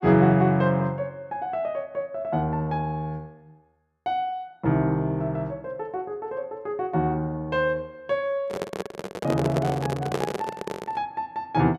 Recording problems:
microphone handling noise; from 8.5 to 11 s; peak +4 dB vs average level

